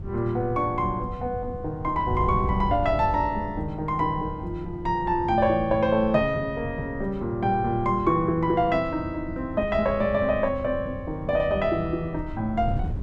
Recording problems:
wind on the microphone; below 130 Hz, SNR 11 dB

